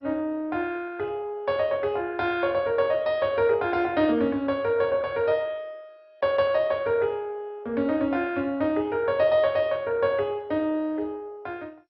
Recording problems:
lossy codec; MP2, log-spectral distance 2 dB, nothing above 4.6 kHz

